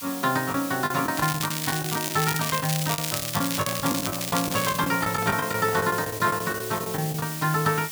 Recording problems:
hiss; slope +3 dB per octave, SNR 7 dB
lost packets; 12% of the sound replaced, filled with the last packet
crackle; from 1 to 4 s and at 4 s; loose cable, SNR 4 dB
microphone handling noise; from 3.5 to 6.5 s; peak -6 dB vs average level

